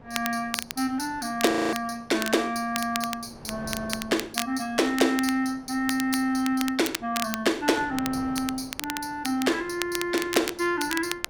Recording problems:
wind on the microphone; below 750 Hz, SNR 20 dB
crackle; vinyl, SNR 8 dB
frozen audio; at 1.5 s

